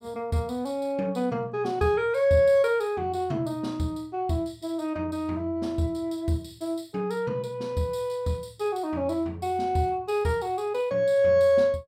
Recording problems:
none

